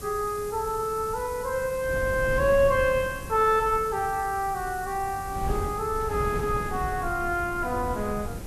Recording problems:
hiss; SNR 18 dB
wind noise; below 200 Hz, SNR 10 dB

